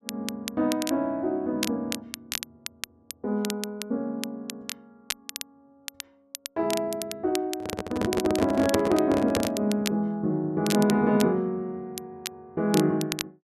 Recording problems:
crackle; vinyl, SNR 10 dB
handling noise; from 7.5 to 9.5 s; peak +4 dB vs average level

